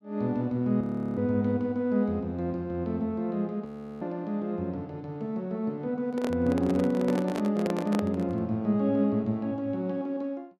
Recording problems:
frozen audio; at 1 s and at 3.5 s
microphone handling noise; from 6 to 8.5 s; peak 0 dB vs average level

